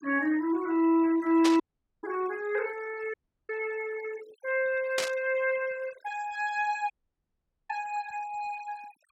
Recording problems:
noise reduction artefacts; signal-to-artefact ratio 20 dB
static burst; at 1.5 s and at 5 s; peak +3 dB vs average level
dropout; at 1.5 s, at 3 s and at 7 s for 1 s

